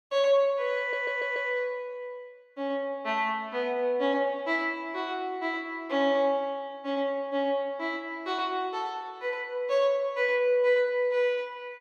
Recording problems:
audio stuttering; at 1 s

